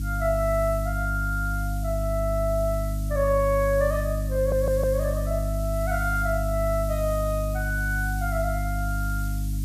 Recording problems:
electrical hum; 50 Hz, harmonics up to 300 Hz, SNR 2 dB
hiss; slope +4 dB per octave, SNR 16 dB
stutter; at 4.5 s

